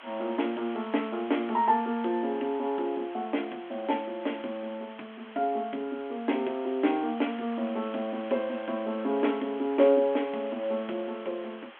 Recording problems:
phone line; 260 Hz to 3.5 kHz, G.726
background hiss; SNR 18 dB

